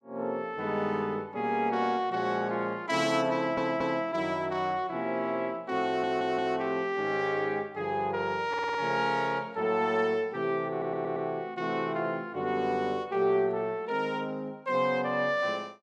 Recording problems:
audio stuttering; 4 times, first at 3.5 s

